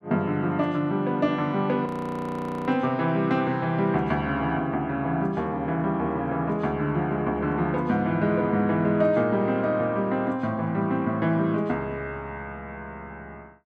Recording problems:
frozen audio; at 2 s for 1 s

